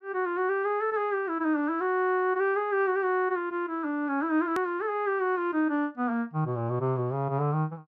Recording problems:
edit click; at 4.5 s

